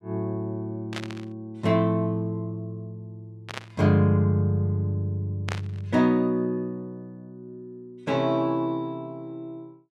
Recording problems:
static burst; at 1 s, at 3.5 s and at 5.5 s; peak -3 dB vs average level

